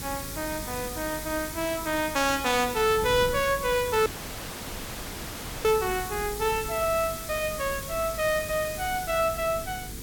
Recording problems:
electrical hum; 50 Hz, harmonics up to 500 Hz, SNR 19 dB
background hiss; slope +1 dB per octave, SNR 10 dB
wind noise; below 240 Hz, SNR 16 dB
audio cutting out; at 4 s for 1.5 s

